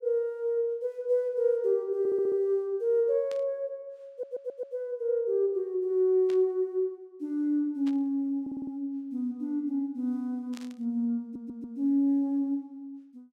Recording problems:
audio stuttering; 4 times, first at 2 s
static burst; 4 times, first at 3.5 s; peak -12 dB vs average level

